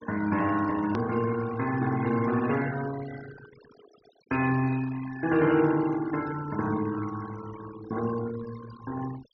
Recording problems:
low-pass filter; nothing above 6.1 kHz
noise reduction artefacts; signal-to-artefact ratio 15 dB
click at an edit; at 1 s

